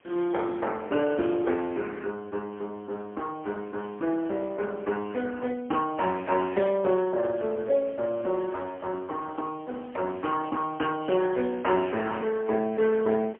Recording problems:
telephone audio; 220 Hz to 3.3 kHz, AMR-NB, then MP3
hiss; SNR 29 dB

